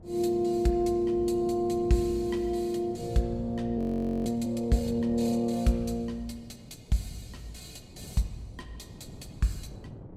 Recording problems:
wind noise; below 300 Hz, SNR 19 dB
audio freezing; at 4 s

